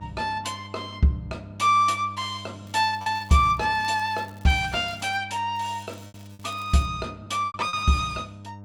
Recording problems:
electrical hum; 50 Hz, harmonics up to 900 Hz, SNR 18 dB
lost packets; 4% of the sound replaced, filled with repeated pitch periods
crackling; from 2.5 to 5 s and from 5.5 to 7 s; loose cable, SNR 29 dB

